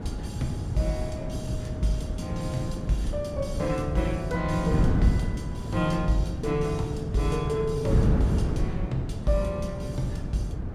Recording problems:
hum; 50 Hz, harmonics up to 950 Hz, SNR 25 dB
wind noise; below 200 Hz, SNR 1 dB

